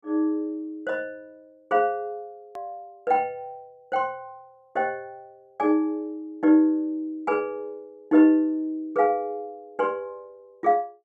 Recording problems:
click at an edit; at 2.5 s

